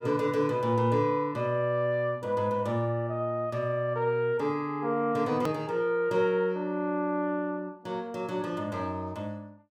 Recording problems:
hard cut with a click; at 5.5 s

